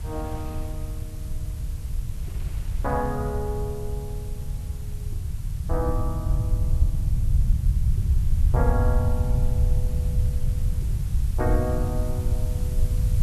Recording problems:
hiss; slope 0 dB per octave, SNR 16 dB
low-frequency rumble; below 94 Hz, SNR -6 dB
wind noise; below 1.7 kHz, SNR 18 dB

